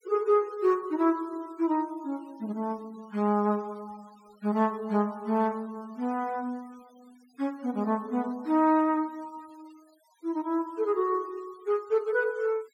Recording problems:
denoising artefacts; signal-to-artefact ratio 28 dB

